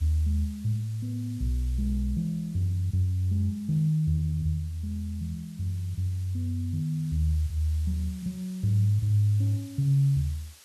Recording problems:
background hiss; slope +2 dB per octave, SNR 24 dB

